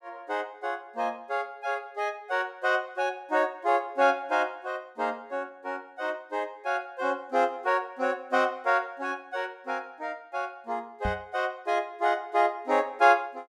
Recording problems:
microphone thump; at 11 s; peak -1 dB vs average level

